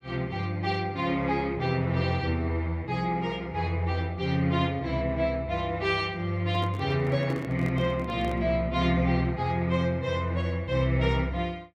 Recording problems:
microphone handling noise; from 6.5 to 8.5 s; peak -5 dB vs average level

